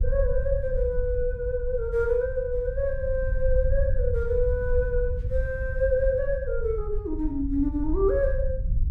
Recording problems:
rumble; below 64 Hz, SNR 4 dB

